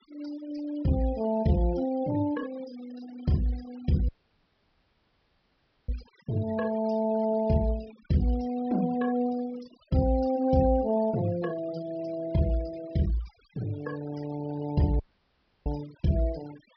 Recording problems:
low-pass filter; nothing above 5.5 kHz
denoising artefacts; signal-to-artefact ratio 21 dB
dropout; at 4 s for 2 s and at 15 s for 0.5 s

